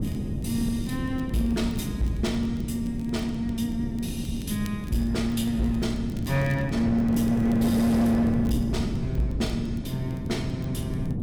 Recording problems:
distorted audio; hard clipping, signal-to-distortion ratio 12 dB
wind on the microphone; below 250 Hz, SNR 5 dB
crackle; vinyl, SNR 28 dB

